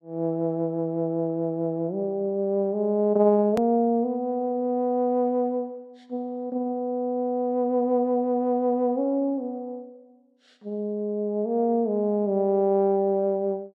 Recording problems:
edit click; at 3.5 s

